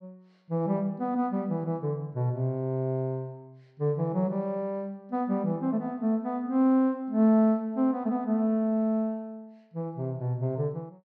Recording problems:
none

